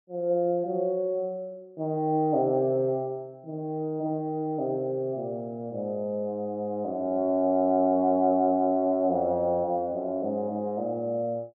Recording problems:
none

